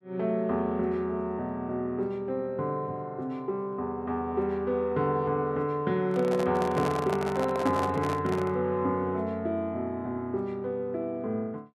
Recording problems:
microphone handling noise; from 6 to 8.5 s; peak 0 dB vs average level

